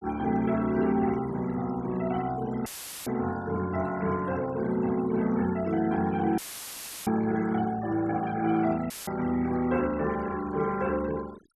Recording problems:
noise reduction artefacts; signal-to-artefact ratio 18 dB
audio cutting out; at 2.5 s, at 6.5 s for 0.5 s and at 9 s; filled with static

